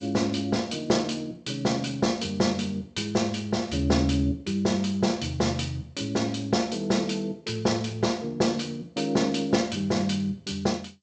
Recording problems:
lossy compression; G.722, log-spectral distance 4 dB, nothing above 8 kHz

